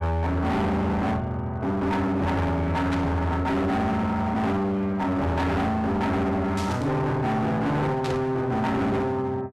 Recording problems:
distortion; hard clipping, uneven, signal-to-distortion ratio 6 dB
burst of static; at 3 s, at 6.5 s and at 8 s; peak -5 dB vs average level

